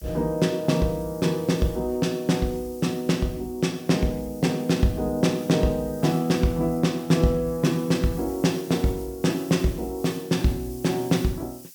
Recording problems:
background hiss; SNR 20 dB

